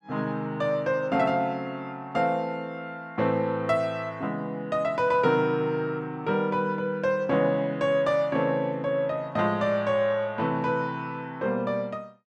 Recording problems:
none

